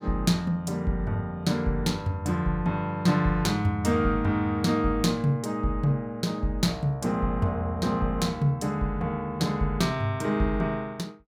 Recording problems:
none

